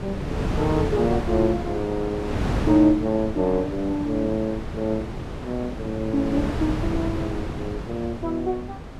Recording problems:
wind noise; below 450 Hz, SNR 5 dB

